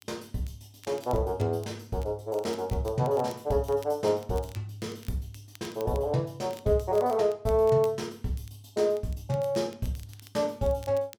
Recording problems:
crackling; vinyl, SNR 24 dB

